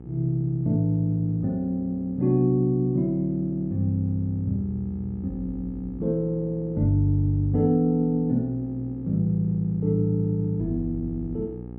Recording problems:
electrical hum; 60 Hz, harmonics up to 900 Hz, SNR 16 dB

